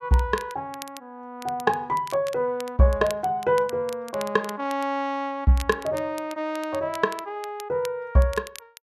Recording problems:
crackling; vinyl, SNR 18 dB

